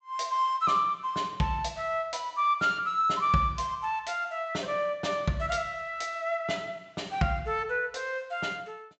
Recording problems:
treble missing; nothing above 8 kHz

